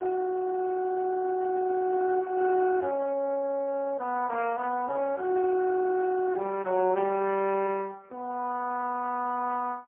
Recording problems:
telephone audio; 220 Hz to 2.5 kHz, AMR-NB, then MP3

